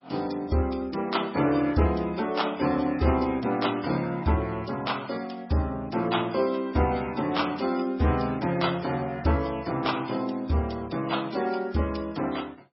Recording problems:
codec artefacts; AAC, then MP3, log-spectral distance 4 dB, nothing above 5.5 kHz

